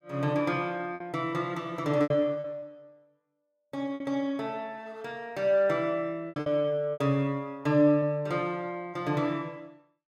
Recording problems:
packet loss; 6% of the sound replaced, filled with repeated pitch periods

